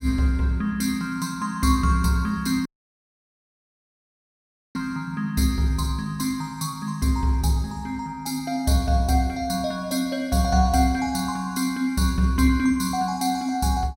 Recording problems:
dropout; at 2.5 s for 2 s

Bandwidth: 16 kHz